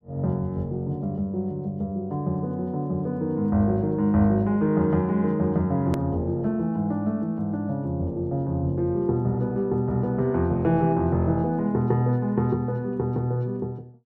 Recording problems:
hard cut with a click; at 6 s

